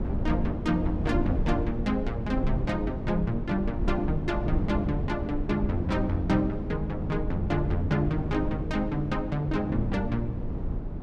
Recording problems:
wind noise; below 180 Hz, SNR 3 dB

